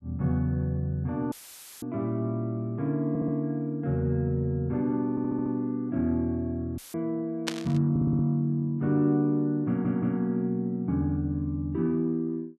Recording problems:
dropout; at 1.5 s for 0.5 s and at 7 s; filled with static
audio stuttering; 4 times, first at 3 s
static burst; at 7.5 s; peak +2 dB vs average level

